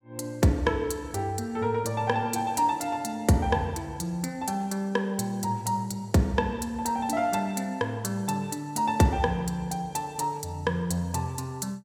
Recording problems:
none

